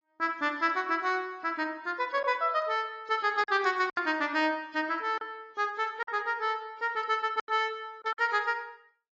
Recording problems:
lossy compression; AAC, log-spectral distance 2 dB
packet loss; 4% of the sound replaced, filled with silence

